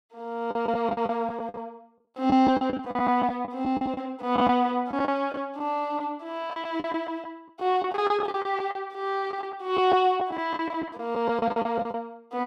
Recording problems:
packet loss; 13% of the sound replaced, filled with the last packet

